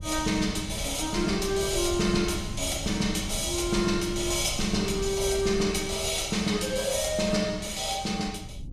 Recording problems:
low-frequency rumble; below 120 Hz, SNR 12 dB

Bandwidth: 13.5 kHz